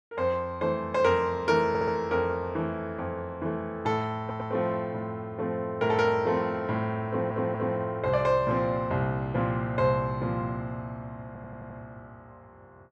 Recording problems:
stutter; 4 times, first at 1.5 s

